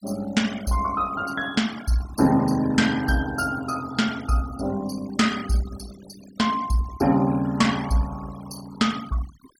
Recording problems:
denoising artefacts; signal-to-artefact ratio 16 dB

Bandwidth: 17 kHz